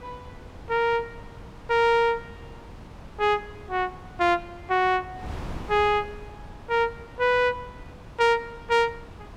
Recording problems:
wind noise; below 520 Hz, SNR 18 dB

